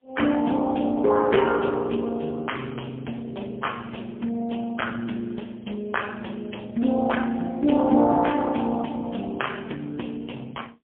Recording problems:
phone line; 190 Hz to 3.3 kHz, AMR-NB, then MP3

